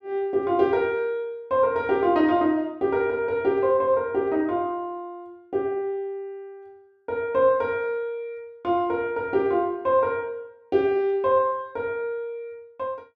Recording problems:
none

